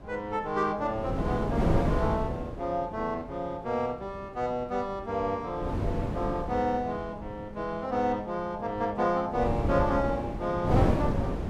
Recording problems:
wind on the microphone; below 350 Hz, SNR 1 dB

